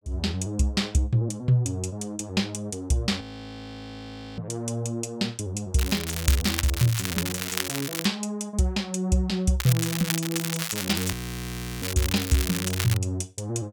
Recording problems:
audio freezing; at 3 s for 1 s and at 11 s for 0.5 s
crackle; from 6 to 8 s and from 9.5 to 13 s; loose cable, SNR 4 dB

